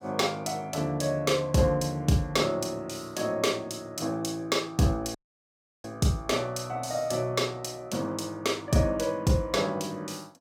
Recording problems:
dropout; at 5 s for 0.5 s

